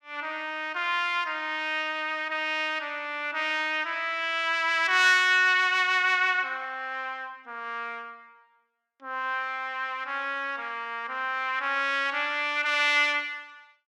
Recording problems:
none

